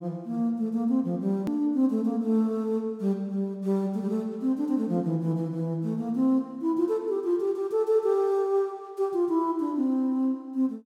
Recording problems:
click at an edit; at 1.5 s

